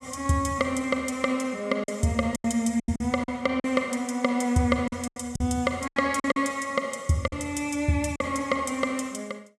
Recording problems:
lost packets; 8% of the sound replaced, filled with silence

